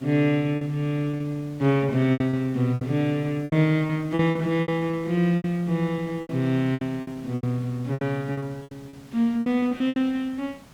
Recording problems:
background hiss; slope -3 dB per octave, SNR 24 dB
lost packets; 14% of the sound replaced, filled with repeated pitch periods

